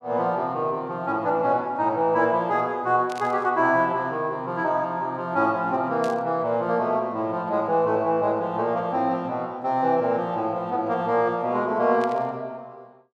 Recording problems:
static burst; at 3 s, at 6 s and at 12 s; peak -10 dB vs average level

